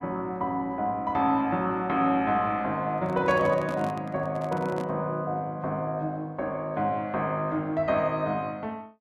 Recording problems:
microphone handling noise; from 3 to 5 s; peak -6 dB vs average level

